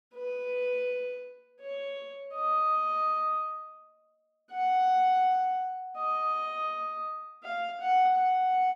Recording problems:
none

